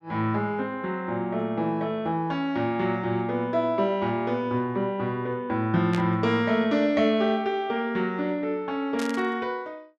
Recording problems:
burst of static; at 6 s and at 9 s; peak -5 dB vs average level

